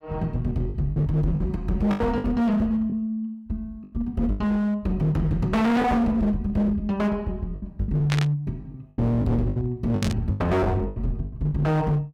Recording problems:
distorted audio; hard clipping, signal-to-distortion ratio 7 dB
lost packets; 9% of the sound replaced, filled with the last packet
static burst; at 8 s and at 10 s; peak +1 dB vs average level

